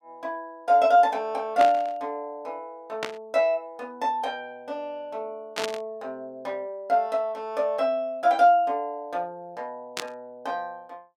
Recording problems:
burst of static; 4 times, first at 1.5 s; peak 0 dB vs average level

